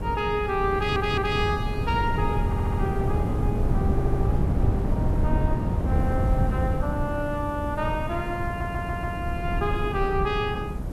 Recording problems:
hiss; slope +3 dB per octave, SNR 27 dB
wind noise; below 180 Hz, SNR -2 dB
audio stuttering; 4 times, first at 1 s

